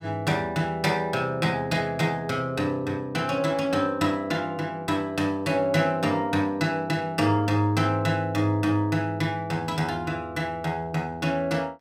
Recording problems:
none

